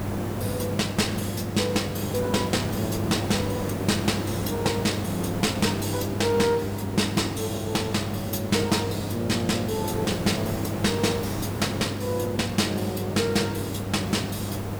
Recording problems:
distorted audio; hard clipping, uneven, signal-to-distortion ratio 12 dB
electrical hum; 50 Hz, harmonics up to 500 Hz, SNR 7 dB
background hiss; slope -7 dB per octave, SNR 6 dB

